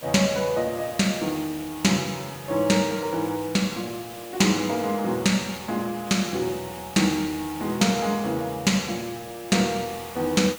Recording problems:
hiss; SNR 16 dB

